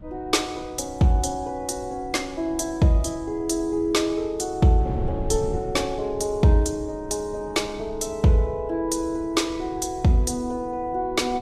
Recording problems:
lossy compression; Vorbis, log-spectral distance 2 dB, nothing above 13.1 kHz
wind noise; below 150 Hz, SNR 15 dB

